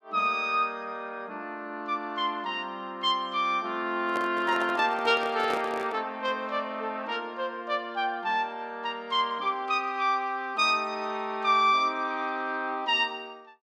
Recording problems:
microphone handling noise; from 4 to 6 s; peak -3 dB vs average level

